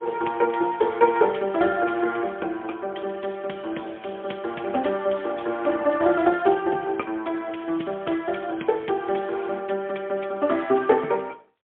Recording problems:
telephone audio; 260 Hz to 3.3 kHz, AMR-NB, then MP3

